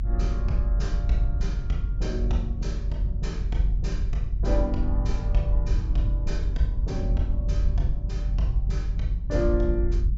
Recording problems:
low-pass filter; nothing above 8 kHz
rumble; below 64 Hz, strongest tone 44 Hz, SNR -5 dB

